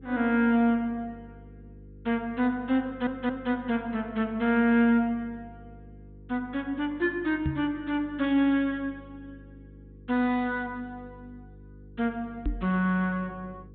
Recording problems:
low-pass filter; nothing above 4 kHz
hum; 50 Hz, harmonics up to 500 Hz, SNR 22 dB
stutter; at 3 s
knock on the microphone; at 7.5 s and at 12 s; peak +1 dB vs average level

